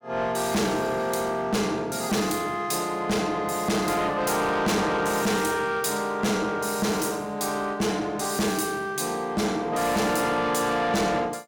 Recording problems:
distortion; soft clipping, signal-to-distortion ratio 7 dB

